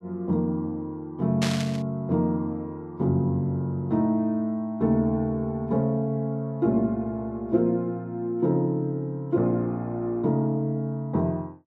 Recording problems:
burst of static; at 1.5 s; peak +1 dB vs average level

